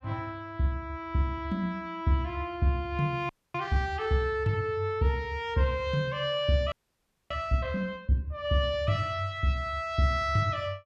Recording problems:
frozen audio; at 3.5 s and at 6.5 s for 0.5 s

